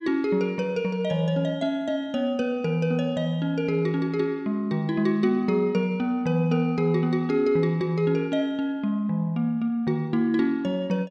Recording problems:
none

